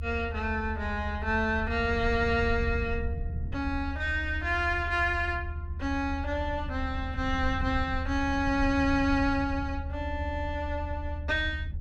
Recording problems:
rumble; below 78 Hz, SNR 6 dB

